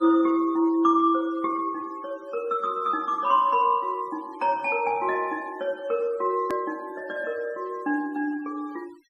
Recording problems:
denoising artefacts; signal-to-artefact ratio 27 dB
edit click; at 6.5 s

